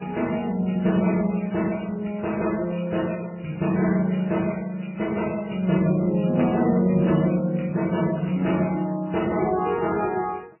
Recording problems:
lossy compression; MP3, then AAC, log-spectral distance 6 dB, nothing above 2.9 kHz

